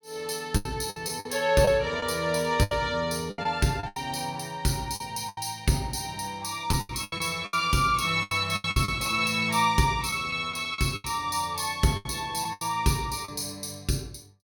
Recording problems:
lost packets; 11% of the sound replaced, filled with the last packet

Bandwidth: 18 kHz